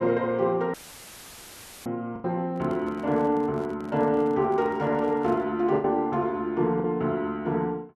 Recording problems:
lost packets; 3% of the sound replaced, filled with the last packet
audio cutting out; at 0.5 s for 1 s; filled with static
handling noise; from 2.5 to 5.5 s; peak -13 dB vs average level

